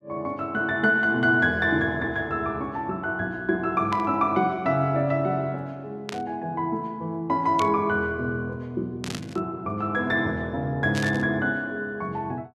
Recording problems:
static burst; 5 times, first at 4 s; peak -4 dB vs average level

